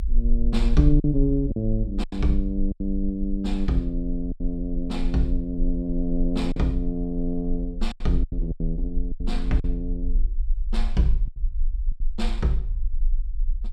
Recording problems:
low-frequency rumble; below 42 Hz, strongest tone 24 Hz, SNR 3 dB
lost packets; 7% of the sound replaced, filled with silence

